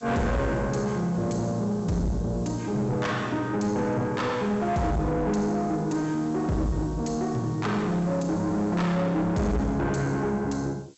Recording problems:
low-pass filter; nothing above 7.8 kHz
distorted audio; soft clipping, signal-to-distortion ratio 7 dB
background hiss; slope +4 dB per octave, SNR 27 dB

